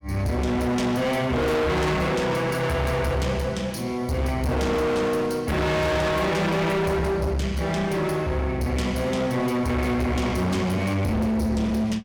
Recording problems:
distortion; hard clipping, uneven, signal-to-distortion ratio 5 dB

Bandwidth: 18 kHz